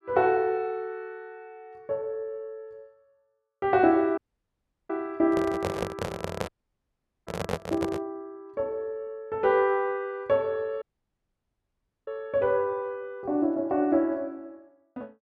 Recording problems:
audio cutting out; at 4 s for 0.5 s, at 6.5 s for 1 s and at 11 s for 1.5 s
microphone handling noise; from 5.5 to 8 s; peak +3 dB vs average level

